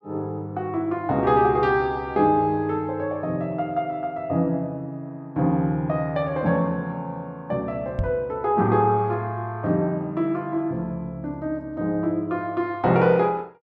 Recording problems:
microphone bump; at 8 s; peak +1 dB vs average level

